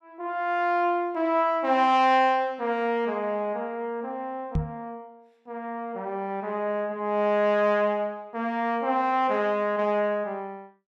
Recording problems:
microphone bump; at 4.5 s; peak +2 dB vs average level

